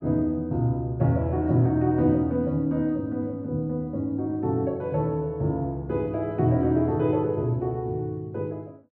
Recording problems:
none

